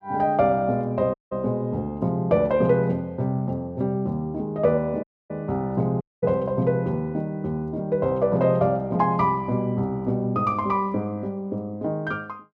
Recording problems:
audio cutting out; at 1 s, at 5 s and at 6 s

